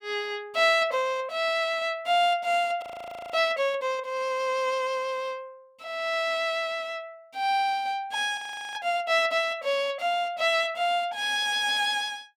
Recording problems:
audio freezing; at 3 s for 0.5 s and at 8.5 s

